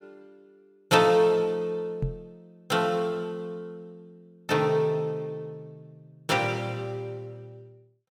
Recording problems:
microphone bump; at 2 s; peak 0 dB vs average level

